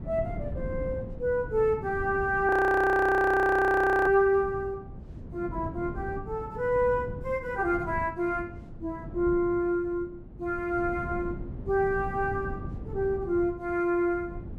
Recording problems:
wind on the microphone; below 210 Hz, SNR 13 dB
audio freezing; at 2.5 s for 1.5 s

